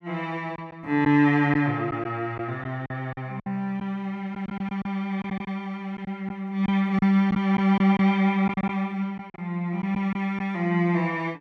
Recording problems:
lost packets; 7% of the sound replaced, filled with silence

